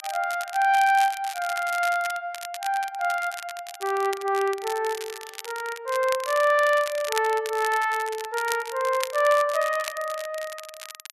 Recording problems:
crackle; vinyl, SNR 13 dB

